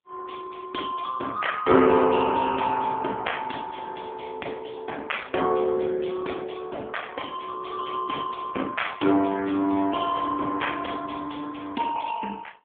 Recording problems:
telephone audio; 220 Hz to 3.4 kHz, AMR-NB

